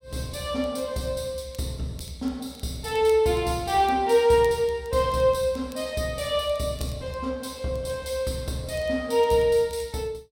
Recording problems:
crackling; vinyl, SNR 27 dB

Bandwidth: 16 kHz